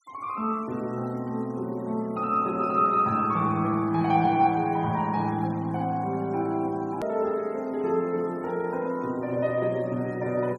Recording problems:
noise reduction artefacts; signal-to-artefact ratio 28 dB
click at an edit; at 7 s

